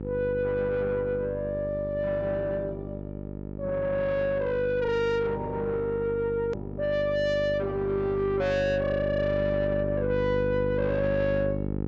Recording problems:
low-pass filter; nothing above 8 kHz
distorted audio; soft clipping, signal-to-distortion ratio 6 dB
mains hum; 50 Hz, harmonics up to 900 Hz, SNR 7 dB
edit click; at 6.5 s

